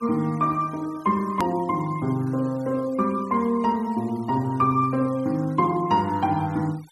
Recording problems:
denoising artefacts; signal-to-artefact ratio 26 dB
hard cut with a click; at 1.5 s

